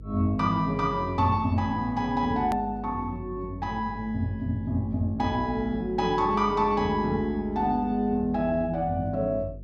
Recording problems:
hum; 50 Hz, harmonics up to 450 Hz, SNR 16 dB
edit click; at 2.5 s

